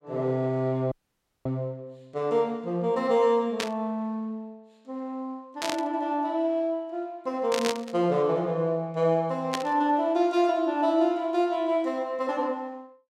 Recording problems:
dropout; at 1 s for 0.5 s
static burst; 4 times, first at 3.5 s; peak +1 dB vs average level

